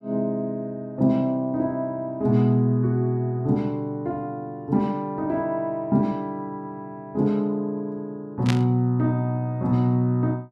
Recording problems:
burst of static; at 8.5 s; peak 0 dB vs average level

